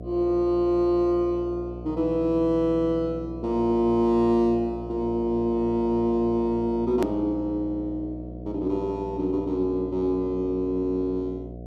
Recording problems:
electrical hum; 60 Hz, harmonics up to 720 Hz, SNR 13 dB
edit click; at 7 s

